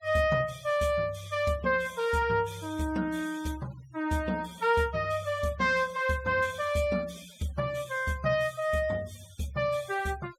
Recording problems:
denoising artefacts; signal-to-artefact ratio 23 dB

